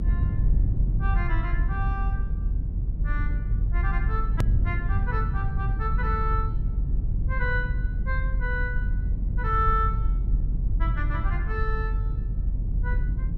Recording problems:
rumble; below 86 Hz, strongest tone 44 Hz, SNR -5 dB
edit click; at 4.5 s

